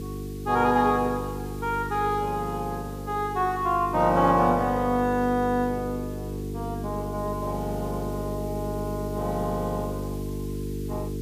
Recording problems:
hum; 50 Hz, harmonics up to 450 Hz, SNR 7 dB
background hiss; slope +4 dB per octave, SNR 23 dB

